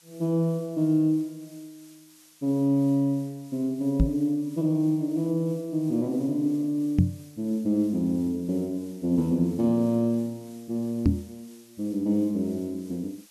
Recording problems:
background hiss; slope +2 dB per octave, SNR 27 dB
knock on the microphone; at 4 s, at 7 s and at 11 s; peak +9 dB vs average level

